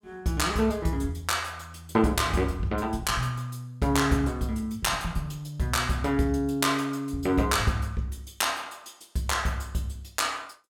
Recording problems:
none

